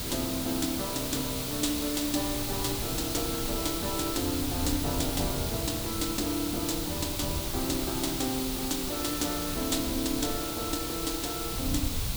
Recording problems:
hiss; SNR 1 dB
wind noise; below 120 Hz, SNR 9 dB

